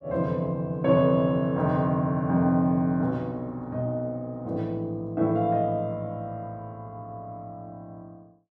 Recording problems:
none

